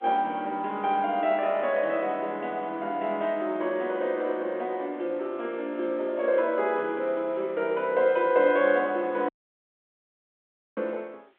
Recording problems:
telephone audio; 260 Hz to 3.7 kHz, G.711
background hiss; SNR 41 dB
audio cutting out; at 9.5 s for 1.5 s

